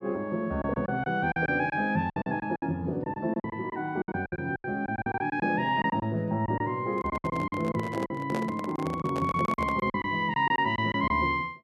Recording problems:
packet loss; 13% of the sound replaced, filled with silence
microphone handling noise; from 7 to 10 s; peak -2 dB vs average level

